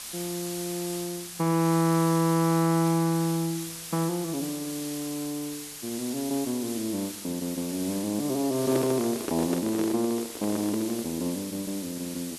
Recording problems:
hiss; slope +2 dB per octave, SNR 9 dB
handling noise; from 8.5 to 11 s; peak +2 dB vs average level

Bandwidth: 12.5 kHz